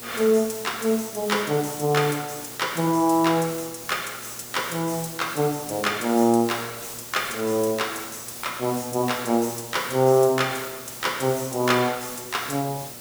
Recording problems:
hum; 60 Hz, harmonics up to 1.4 kHz, SNR 25 dB
background hiss; slope -2 dB per octave, SNR 12 dB

